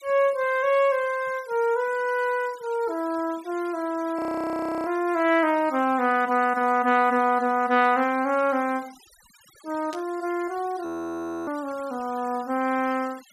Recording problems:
noise reduction artefacts; signal-to-artefact ratio 23 dB
frozen audio; at 4 s for 0.5 s and at 11 s for 0.5 s
burst of static; at 10 s; peak -12 dB vs average level

